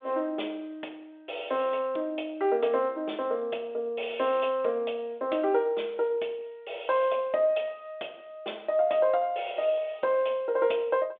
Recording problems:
phone line; 280 Hz to 3.6 kHz, G.726

